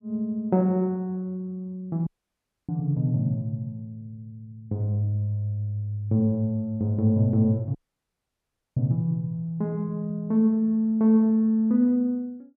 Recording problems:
dropout; at 2 s for 0.5 s and at 8 s for 1 s

